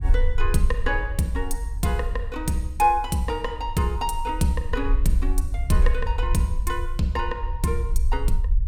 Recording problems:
low-frequency rumble; below 52 Hz, strongest tone 24 Hz, SNR 3 dB

